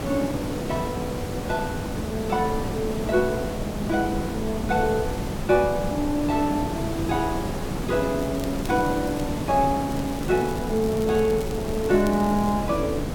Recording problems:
background hiss; slope -6 dB per octave, SNR 5 dB
low-frequency rumble; below 94 Hz, strongest tone 20 Hz, SNR 13 dB
crackling; from 8 to 9 s and from 10 to 13 s; loose cable, SNR 19 dB

